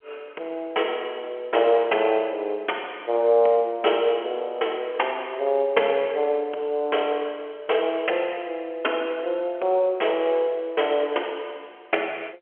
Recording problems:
phone line; 340 Hz to 3.3 kHz, G.711

